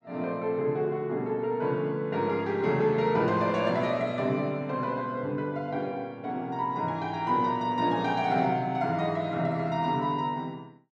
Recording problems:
none

